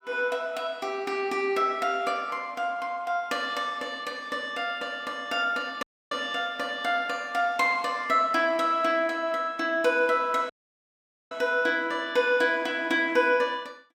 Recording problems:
dropout; at 6 s and at 11 s for 1 s

